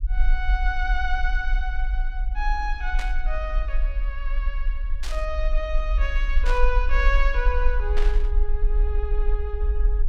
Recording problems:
rumble; below 44 Hz, strongest tone 20 Hz, SNR -4 dB
burst of static; 4 times, first at 3 s; peak -1 dB vs average level

